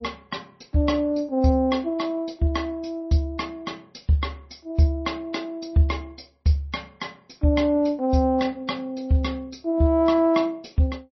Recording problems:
lossy codec; MP3, log-spectral distance 4 dB, nothing above 5.7 kHz

